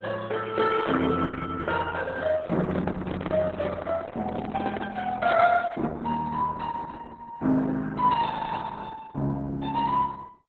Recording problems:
codec artefacts; Opus, then Opus, log-spectral distance 4 dB
handling noise; from 2.5 to 5 s; peak 0 dB vs average level
audio freezing; at 8.5 s

